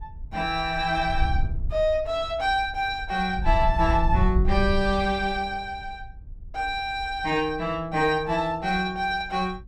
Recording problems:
wind on the microphone; below 70 Hz, SNR 5 dB

